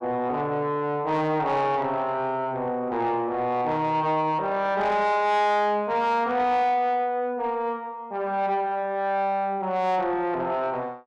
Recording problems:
distortion; soft clipping, signal-to-distortion ratio 11 dB

